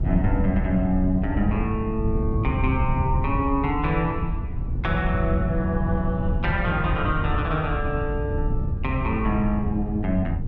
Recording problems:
wind on the microphone; below 120 Hz, SNR 2 dB

